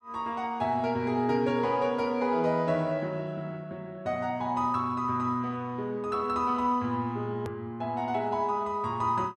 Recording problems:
edit click; at 7.5 s

